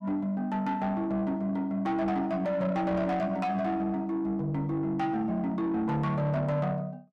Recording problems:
distortion; soft clipping, signal-to-distortion ratio 11 dB

